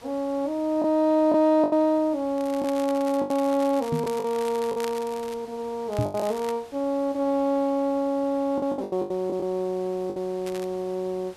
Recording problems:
hiss; slope -3 dB per octave, SNR 24 dB
packet loss; 7% of the sound replaced, filled with the last packet
crackle; from 2.5 to 5.5 s, at 6 s and at 10 s; loose cable, SNR 18 dB
microphone thump; at 4 s and at 6 s; peak +2 dB vs average level

